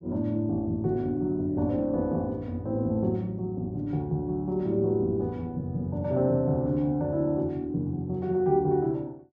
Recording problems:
none

